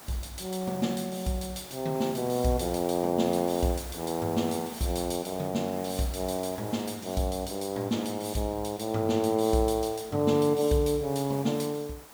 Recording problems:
hiss; SNR 16 dB

